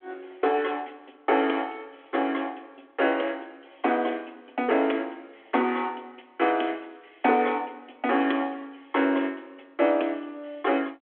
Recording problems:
telephone audio; 240 Hz to 3.4 kHz, G.726

